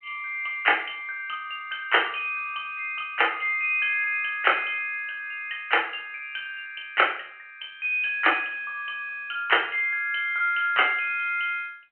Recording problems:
phone line; 280 Hz to 3.1 kHz, G.726

